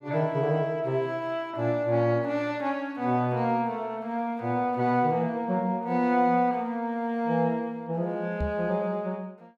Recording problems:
microphone bump; at 8.5 s; peak 0 dB vs average level

